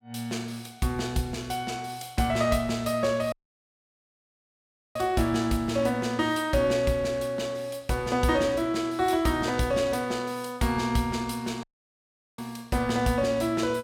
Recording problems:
dropout; at 3.5 s for 1.5 s and at 12 s for 1 s

